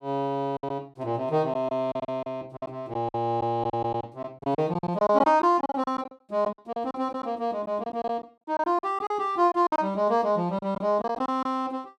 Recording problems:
lost packets; 12% of the sound replaced, filled with silence

